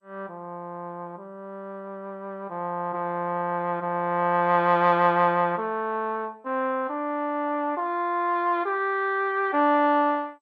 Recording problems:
lossy codec; MP2, log-spectral distance 2 dB

